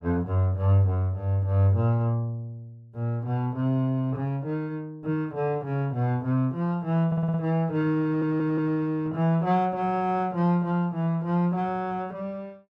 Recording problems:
audio stuttering; at 7 s and at 8 s

